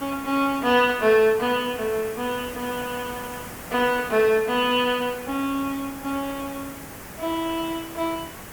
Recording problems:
background hiss; SNR 14 dB

